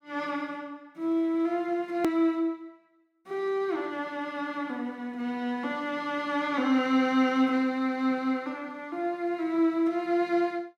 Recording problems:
click at an edit; at 2 s

